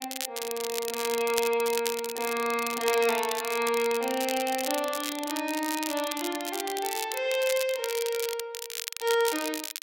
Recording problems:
crackling; vinyl, SNR 6 dB

